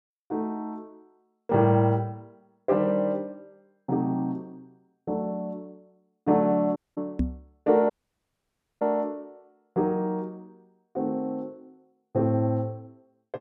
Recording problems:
audio cutting out; at 7 s and at 8 s for 1 s
microphone bump; at 7 s; peak +5 dB vs average level

